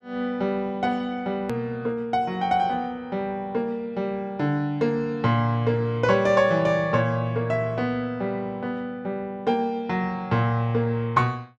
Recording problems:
edit click; at 1.5 s

